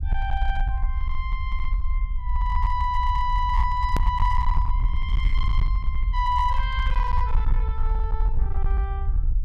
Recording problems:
distorted audio; hard clipping, uneven, signal-to-distortion ratio 12 dB
low-frequency rumble; below 56 Hz, SNR -2 dB
hard cut with a click; at 4 s

